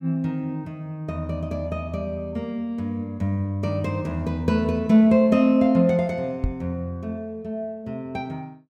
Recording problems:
microphone bump; at 6.5 s; peak +2 dB vs average level

